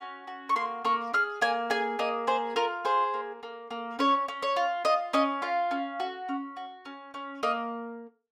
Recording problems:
none

